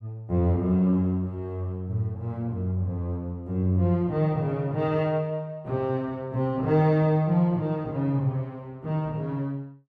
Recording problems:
none

